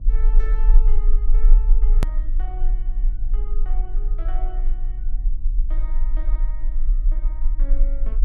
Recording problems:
electrical hum; 50 Hz, harmonics up to 500 Hz, SNR 2 dB
rumble; below 36 Hz, strongest tone 20 Hz, SNR -20 dB
edit click; at 2 s

